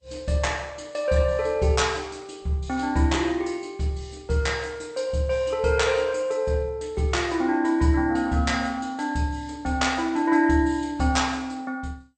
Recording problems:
lossy codec; Vorbis, then MP2, log-spectral distance 3 dB, nothing above 8.5 kHz

